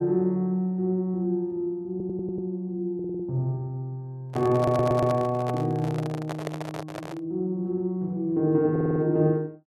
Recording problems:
audio stuttering; 4 times, first at 2 s
microphone handling noise; from 4.5 to 7 s; peak -2 dB vs average level

